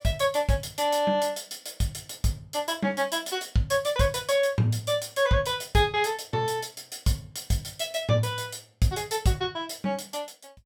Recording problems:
none

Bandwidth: 18.5 kHz